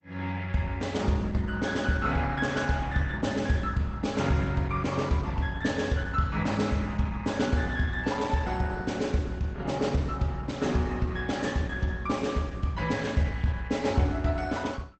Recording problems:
codec artefacts; Opus, log-spectral distance 3 dB, nothing above 8 kHz

